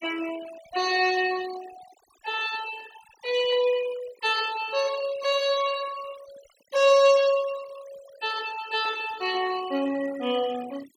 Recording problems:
denoising artefacts; signal-to-artefact ratio 18 dB

